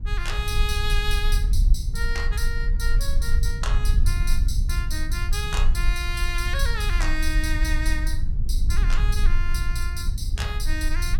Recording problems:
low-frequency rumble; below 54 Hz, SNR -5 dB

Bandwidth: 17 kHz